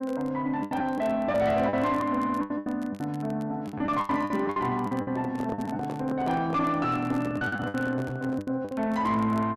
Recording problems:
distortion; soft clipping, signal-to-distortion ratio 10 dB
crackling; vinyl, SNR 27 dB
lost packets; 12% of the sound replaced, filled with the last packet
microphone handling noise; from 5 to 8.5 s; peak -3 dB vs average level

